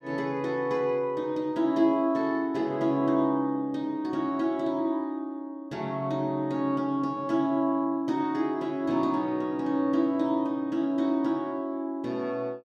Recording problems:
none

